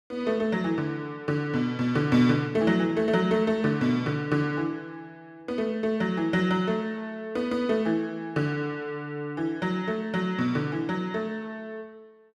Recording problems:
none

